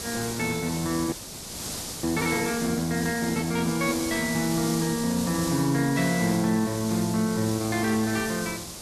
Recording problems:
hiss; SNR 7 dB
frozen audio; at 1 s for 1 s

